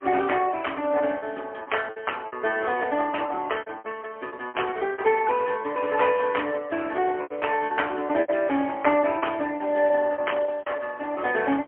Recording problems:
telephone audio; 240 Hz to 3.1 kHz, AMR-NB, then MP3
packet loss; 12% of the sound replaced, filled with repeated pitch periods

